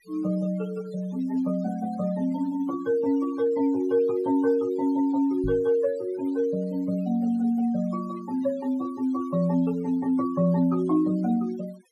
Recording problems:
noise reduction artefacts; signal-to-artefact ratio 24 dB
microphone thump; at 5.5 s; peak -3 dB vs average level

